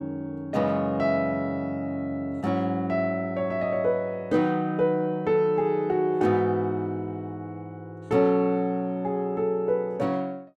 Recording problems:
none

